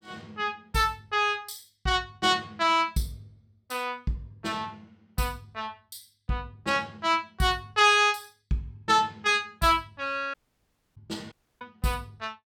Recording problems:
dropout; at 10 s for 0.5 s and at 11 s

